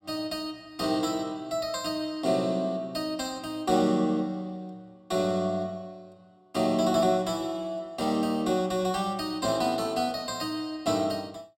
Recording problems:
none

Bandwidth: 16 kHz